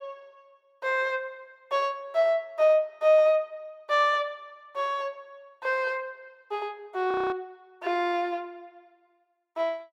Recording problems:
audio freezing; at 7 s

